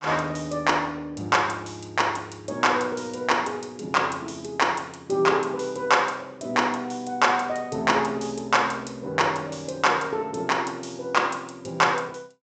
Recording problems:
low-pass filter; nothing above 8 kHz

